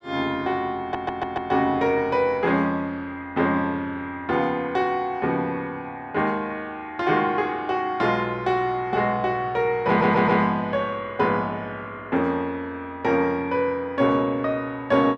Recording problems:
stutter; at 1 s and at 10 s

